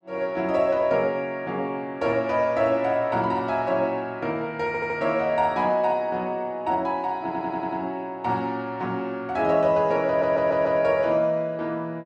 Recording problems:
stutter; at 4.5 s, at 7 s and at 10 s

